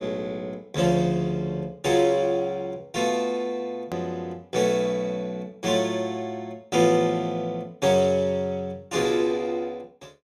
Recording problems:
click at an edit; at 4 s

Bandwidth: 14.5 kHz